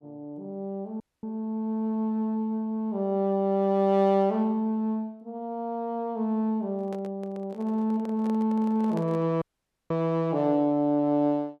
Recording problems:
dropout; at 1 s and at 9.5 s
handling noise; from 7 to 9.5 s; peak -8 dB vs average level

